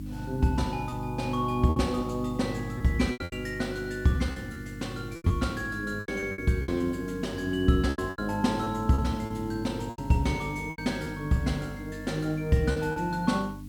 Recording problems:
mains hum; 50 Hz, harmonics up to 300 Hz, SNR 11 dB
background hiss; slope 0 dB per octave, SNR 28 dB
packet loss; 9% of the sound replaced, filled with repeated pitch periods

